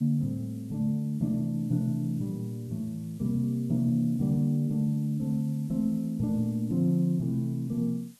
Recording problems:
background hiss; slope +1 dB per octave, SNR 29 dB

